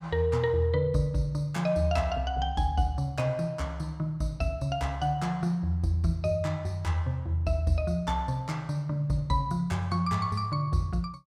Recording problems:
none

